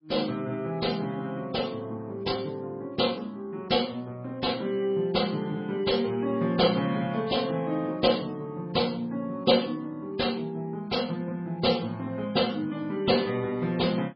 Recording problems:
codec artefacts; MP3, log-spectral distance 3 dB, nothing above 5 kHz

